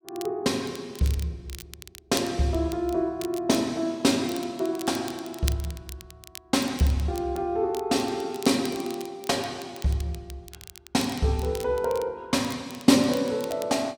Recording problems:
crackle; vinyl, SNR 17 dB

